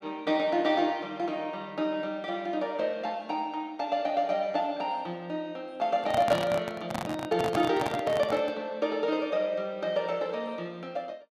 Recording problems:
microphone handling noise; from 6 to 8.5 s; peak +2 dB vs average level

